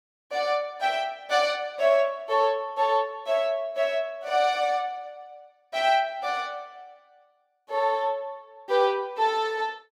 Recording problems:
none

